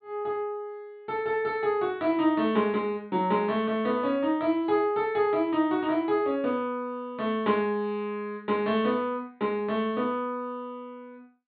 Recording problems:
treble missing; nothing above 4.5 kHz

